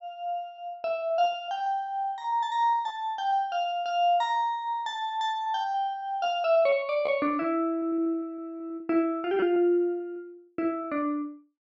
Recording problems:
packet loss; 11% of the sound replaced, filled with repeated pitch periods

